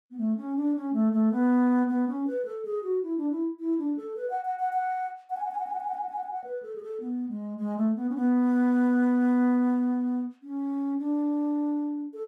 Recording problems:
none

